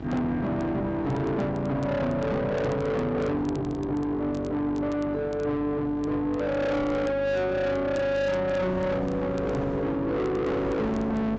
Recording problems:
low-pass filter; nothing above 8 kHz
distortion; soft clipping, signal-to-distortion ratio 8 dB
electrical hum; 50 Hz, harmonics up to 1.3 kHz, SNR 13 dB
wind noise; below 690 Hz, SNR 17 dB
crackle; vinyl, SNR 29 dB

